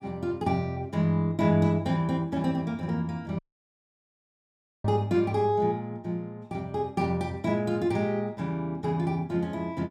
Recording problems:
dropout; at 3.5 s for 1.5 s

